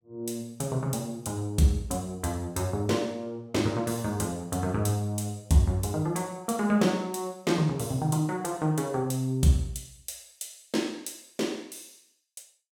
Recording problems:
none

